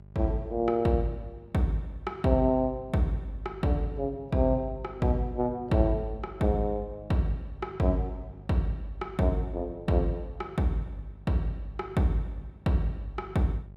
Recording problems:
hum; 50 Hz, harmonics up to 800 Hz, SNR 21 dB

